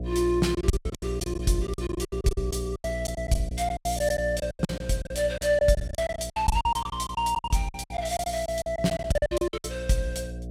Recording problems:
electrical hum; 60 Hz, harmonics up to 720 Hz, SNR 9 dB
lost packets; 20% of the sound replaced, filled with silence

